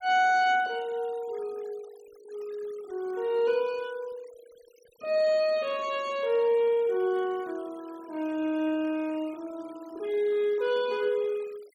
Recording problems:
noise reduction artefacts; signal-to-artefact ratio 25 dB

